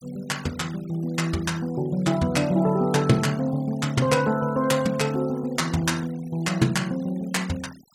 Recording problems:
noise reduction artefacts; signal-to-artefact ratio 21 dB

